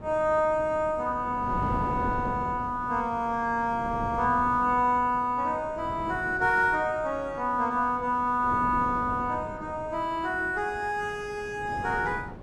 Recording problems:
wind on the microphone; below 420 Hz, SNR 13 dB

